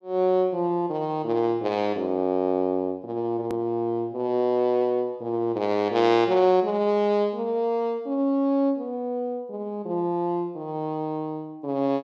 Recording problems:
click at an edit; at 3.5 s

